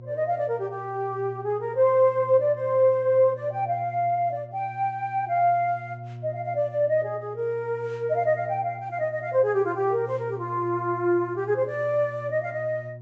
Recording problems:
treble cut off; nothing above 8 kHz
electrical hum; 60 Hz, harmonics up to 600 Hz, SNR 16 dB

